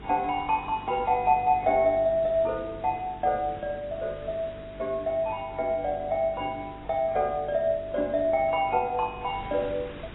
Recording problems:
lossy codec; AAC, log-spectral distance 3 dB
hum; 50 Hz, harmonics up to 450 Hz, SNR 20 dB
wind noise; below 1.9 kHz, SNR 21 dB

